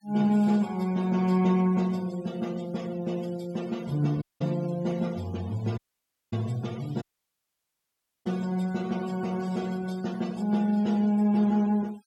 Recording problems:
denoising artefacts; signal-to-artefact ratio 22 dB
dropout; at 4 s, at 6 s for 0.5 s and at 7 s for 1 s

